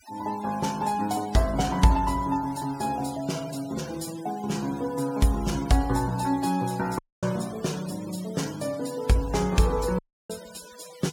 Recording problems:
denoising artefacts; signal-to-artefact ratio 17 dB
audio cutting out; at 7 s and at 10 s

